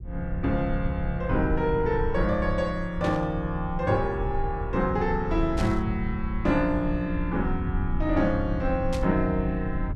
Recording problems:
low-frequency rumble; below 90 Hz, SNR 6 dB
burst of static; at 3 s, at 5.5 s and at 9 s; peak -6 dB vs average level

